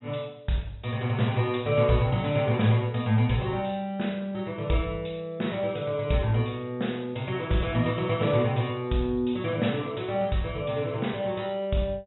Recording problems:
treble missing; nothing above 3.9 kHz

